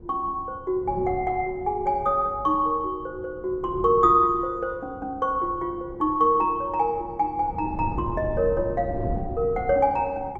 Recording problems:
wind on the microphone; below 230 Hz, SNR 14 dB

